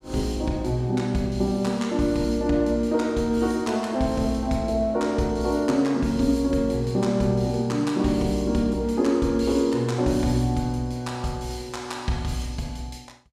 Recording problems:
none

